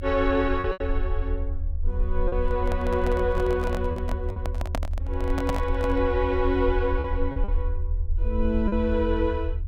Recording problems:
rumble; below 78 Hz, SNR 3 dB
lost packets; 5% of the sound replaced, filled with repeated pitch periods
microphone handling noise; from 2.5 to 6 s; peak +2 dB vs average level

